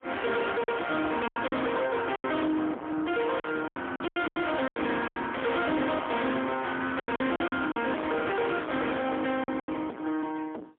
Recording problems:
telephone audio; 220 Hz to 3.7 kHz, AMR-NB, then MP3
distorted audio; soft clipping, signal-to-distortion ratio 7 dB
packet loss; 10% of the sound replaced, filled with silence

